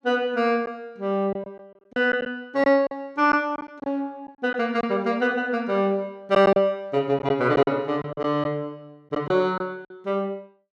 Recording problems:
packet loss; 6% of the sound replaced, filled with silence

